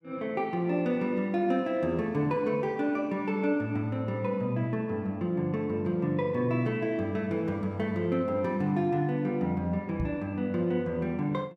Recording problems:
microphone thump; at 10 s; peak 0 dB vs average level

